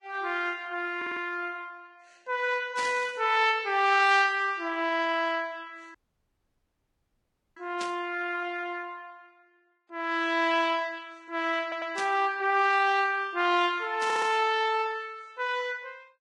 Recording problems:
lossy compression; Vorbis, log-spectral distance 3 dB
stutter; at 1 s, at 12 s and at 14 s
burst of static; 4 times, first at 3 s; peak -5 dB vs average level
dropout; at 6 s for 1.5 s

